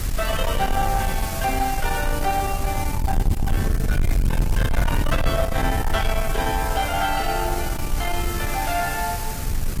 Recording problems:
lossy compression; AAC, log-spectral distance 5 dB, nothing above 15.5 kHz
distortion; soft clipping, signal-to-distortion ratio 7 dB
background hiss; slope -2 dB per octave, SNR 7 dB
rumble; below 98 Hz, SNR 1 dB

